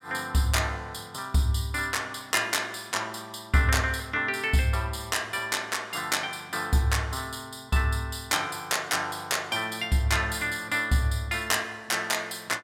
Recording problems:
none

